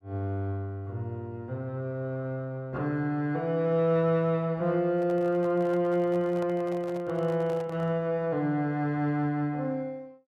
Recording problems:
microphone handling noise; from 5 to 8 s; peak -10 dB vs average level

